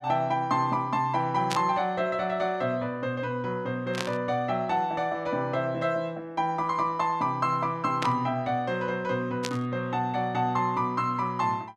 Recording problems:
static burst; 4 times, first at 1.5 s; peak +1 dB vs average level

